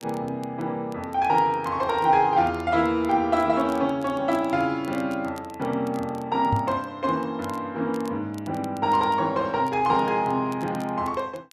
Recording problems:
crackling; vinyl, SNR 27 dB
knock on the microphone; at 6.5 s; peak +2 dB vs average level

